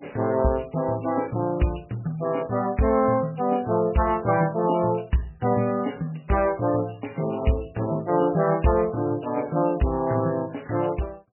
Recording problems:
lossy compression; MP3, log-spectral distance 5 dB, nothing above 2.9 kHz

